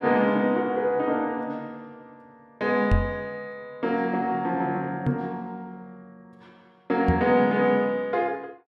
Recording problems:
microphone bump; at 3 s, at 5 s and at 7 s; peak +5 dB vs average level

